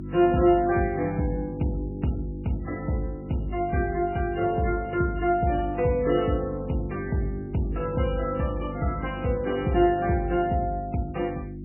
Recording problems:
codec artefacts; MP3, log-spectral distance 3 dB, nothing above 2.9 kHz
electrical hum; 50 Hz, harmonics up to 350 Hz, SNR 10 dB

